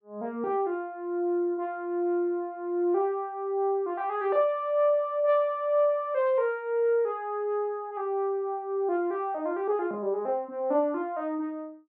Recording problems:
none

